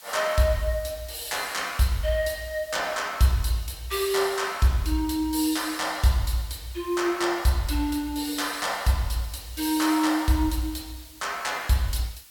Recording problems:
hiss; SNR 20 dB

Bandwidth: 17.5 kHz